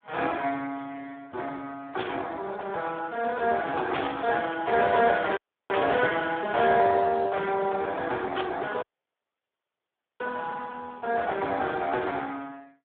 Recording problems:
phone line; 320 Hz to 2.6 kHz, Speex
static burst; 4 times, first at 2 s; peak -4 dB vs average level
audio cutting out; at 5.5 s and at 9 s for 1.5 s

